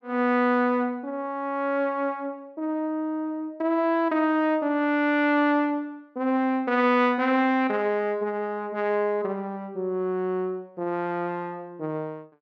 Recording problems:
none

